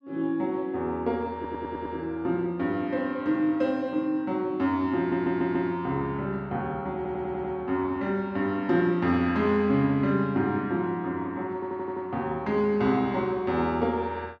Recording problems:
stutter; 4 times, first at 1.5 s

